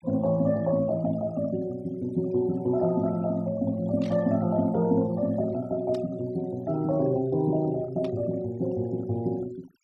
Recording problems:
noise reduction artefacts; signal-to-artefact ratio 24 dB
static burst; at 4 s, at 6 s and at 8 s; peak -14 dB vs average level

